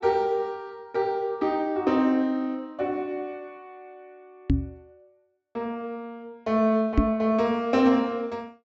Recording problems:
treble cut off; nothing above 7.6 kHz
microphone thump; at 4.5 s and at 7 s; peak +8 dB vs average level

